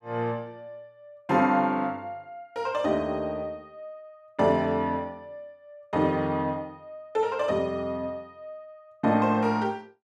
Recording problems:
none

